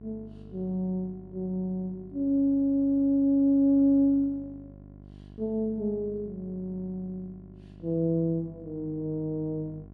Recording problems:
electrical hum; 50 Hz, harmonics up to 750 Hz, SNR 21 dB

